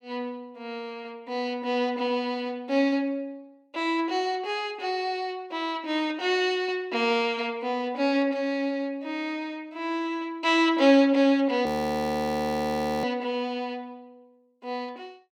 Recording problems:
audio freezing; at 12 s for 1.5 s

